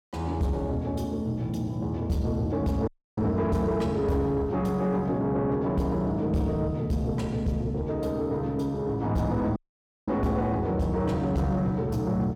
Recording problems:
distortion; soft clipping, signal-to-distortion ratio 10 dB
audio cutting out; at 3 s and at 9.5 s for 0.5 s

